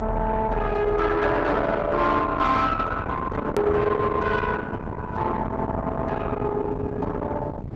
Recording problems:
lossy codec; Opus, log-spectral distance 2 dB, nothing above 13.1 kHz
distortion; soft clipping, signal-to-distortion ratio 11 dB
rumble; below 680 Hz, SNR 7 dB
hard cut with a click; at 3.5 s

